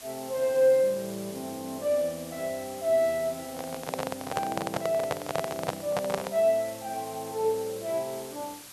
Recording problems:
hiss; slope 0 dB per octave, SNR 14 dB
microphone handling noise; from 3.5 to 6.5 s; peak +4 dB vs average level

